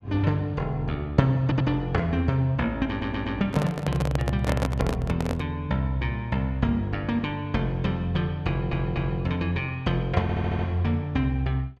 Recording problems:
stutter; 4 times, first at 1.5 s
handling noise; from 3.5 to 5.5 s; peak +2 dB vs average level

